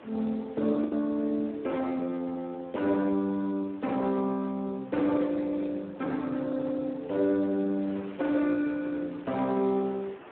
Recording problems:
phone line; 300 Hz to 2.1 kHz, Speex
wind noise; below 1.5 kHz, SNR 21 dB
packet loss; 0.8% of the sound replaced, filled with the last packet

